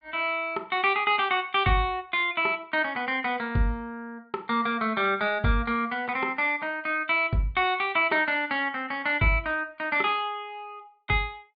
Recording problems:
treble cut off; nothing above 4.8 kHz

